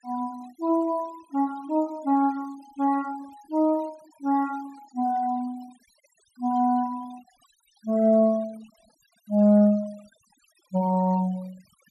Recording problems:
denoising artefacts; signal-to-artefact ratio 27 dB

